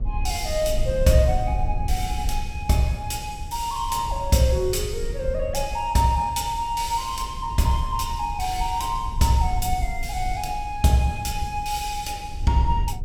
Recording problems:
low-frequency rumble; below 70 Hz, SNR 8 dB

